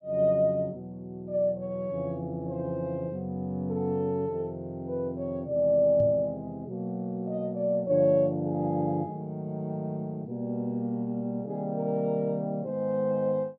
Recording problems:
microphone bump; at 6 s; peak -3 dB vs average level

